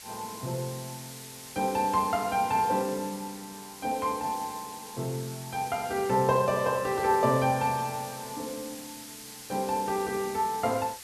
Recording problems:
background hiss; slope +2 dB per octave, SNR 13 dB

